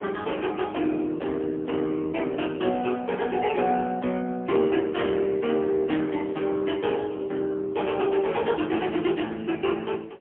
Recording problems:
phone line; 220 Hz to 3.3 kHz, AMR-NB, then MP3

